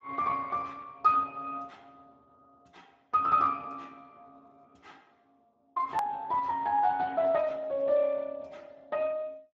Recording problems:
lossy compression; Speex, log-spectral distance 3 dB, nothing above 13.1 kHz
click at an edit; at 6 s

